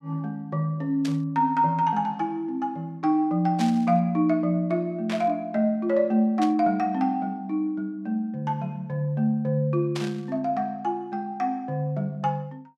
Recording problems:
burst of static; 5 times, first at 1 s; peak -5 dB vs average level

